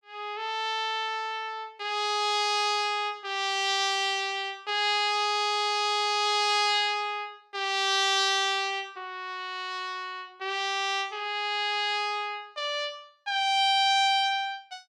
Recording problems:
none

